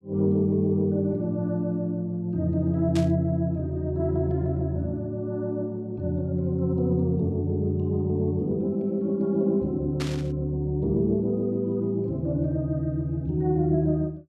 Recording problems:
static burst; at 3 s and at 10 s; peak -5 dB vs average level

